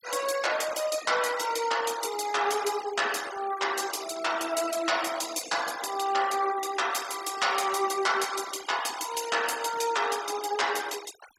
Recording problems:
denoising artefacts; signal-to-artefact ratio 13 dB

